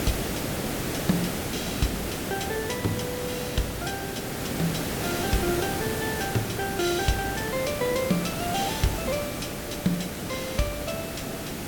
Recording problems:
hiss; SNR 0 dB

